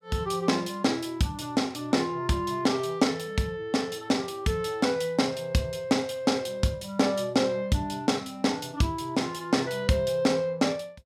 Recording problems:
none

